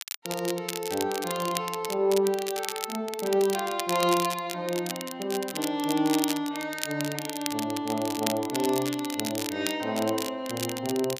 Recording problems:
crackling; vinyl, SNR 7 dB

